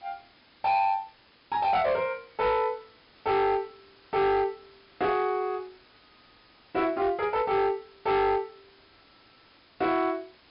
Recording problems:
treble cut off; nothing above 5.5 kHz
distorted audio; hard clipping, signal-to-distortion ratio 12 dB
background hiss; slope -2 dB per octave, SNR 29 dB

